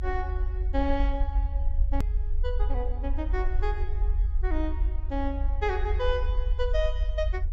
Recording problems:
low-pass filter; nothing above 8 kHz
rumble; below 56 Hz, SNR -4 dB
click at an edit; at 2 s

